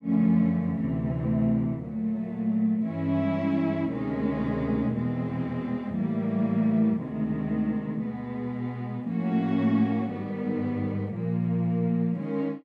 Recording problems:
none

